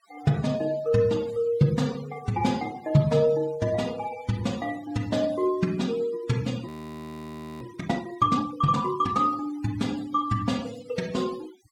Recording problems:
denoising artefacts; signal-to-artefact ratio 20 dB
audio freezing; at 6.5 s for 1 s

